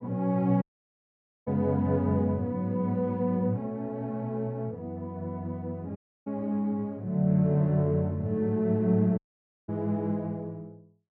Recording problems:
audio cutting out; at 0.5 s for 1 s, at 6 s and at 9 s for 0.5 s

